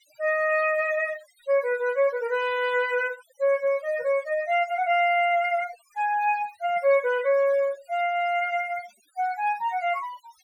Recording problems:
noise reduction artefacts; signal-to-artefact ratio 23 dB

